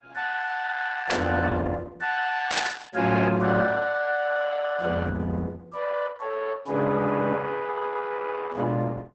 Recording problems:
lossy compression; Opus, log-spectral distance 5 dB, nothing above 7.8 kHz
static burst; at 1 s and at 2.5 s; peak +2 dB vs average level

